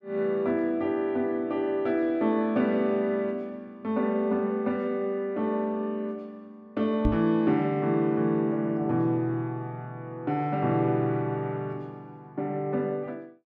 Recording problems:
microphone bump; at 7 s; peak +5 dB vs average level

